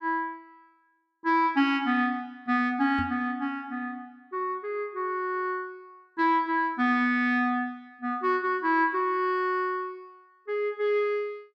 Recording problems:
microphone thump; at 3 s; peak -1 dB vs average level

